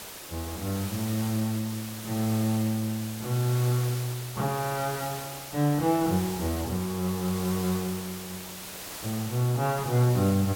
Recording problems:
background hiss; slope -2 dB per octave, SNR 10 dB

